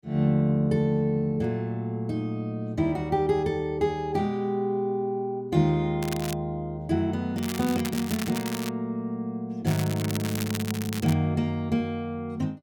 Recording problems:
crackle; at 6 s, from 7.5 to 8.5 s and from 9.5 to 11 s; loose cable, SNR 10 dB

